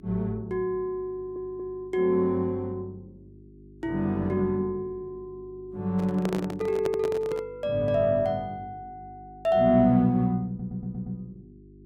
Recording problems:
electrical hum; 50 Hz, harmonics up to 400 Hz, SNR 23 dB
stutter; at 1 s and at 10 s
microphone handling noise; from 6 to 7.5 s; peak -1 dB vs average level

